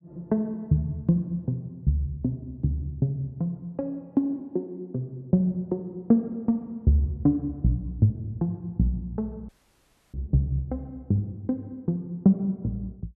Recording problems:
dropout; at 9.5 s for 0.5 s

